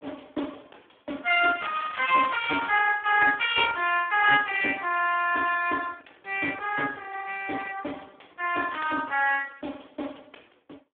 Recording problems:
phone line; 260 Hz to 3.5 kHz, Speex
crackle; from 1.5 to 3 s and at 8.5 s; loose cable, SNR 15 dB

